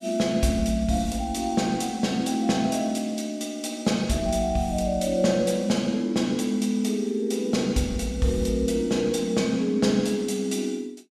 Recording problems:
none

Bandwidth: 14.5 kHz